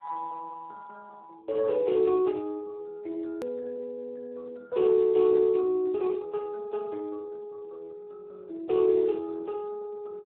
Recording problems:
phone line; 300 Hz to 2.7 kHz, Speex
edit click; at 3.5 s

